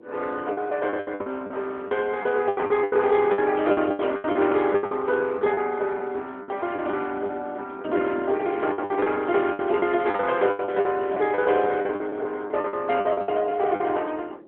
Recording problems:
telephone audio; 280 Hz to 3.5 kHz, AMR-NB
wind noise; below 480 Hz, SNR 19 dB
packet loss; 15% of the sound replaced, filled with the last packet

